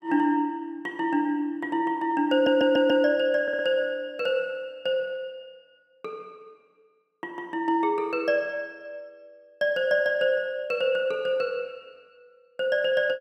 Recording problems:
stutter; at 2.5 s and at 3.5 s

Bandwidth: 14.5 kHz